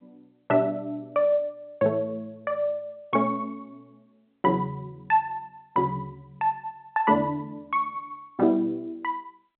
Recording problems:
telephone audio; 260 Hz to 3.3 kHz, G.711

